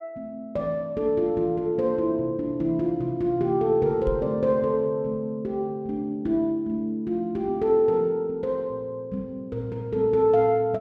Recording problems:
microphone thump; at 4 s; peak -2 dB vs average level

